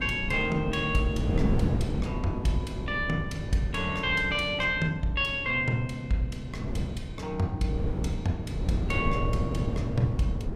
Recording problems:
wind noise; below 220 Hz, SNR 4 dB

